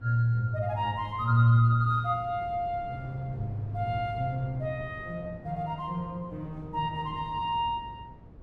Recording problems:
wind noise; below 230 Hz, SNR 17 dB

